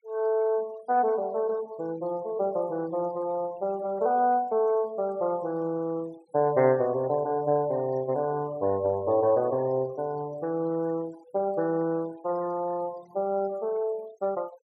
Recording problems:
noise reduction artefacts; signal-to-artefact ratio 23 dB

